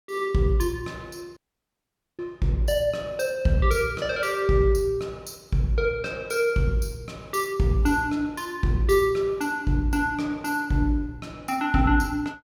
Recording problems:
dropout; at 1.5 s for 1 s

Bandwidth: 18 kHz